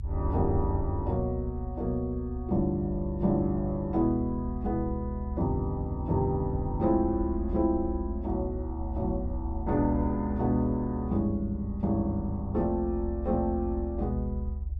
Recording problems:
low-frequency rumble; below 72 Hz, strongest tone 72 Hz, SNR 7 dB

